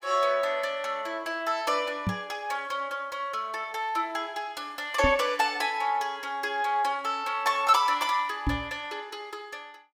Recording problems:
microphone bump; at 2 s, at 5 s and at 8.5 s; peak +4 dB vs average level

